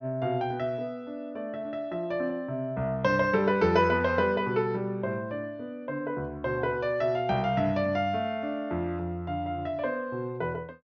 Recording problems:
treble missing; nothing above 6.5 kHz

